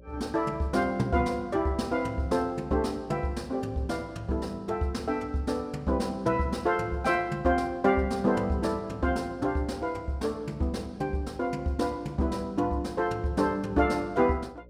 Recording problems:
hum; 60 Hz, harmonics up to 600 Hz, SNR 24 dB

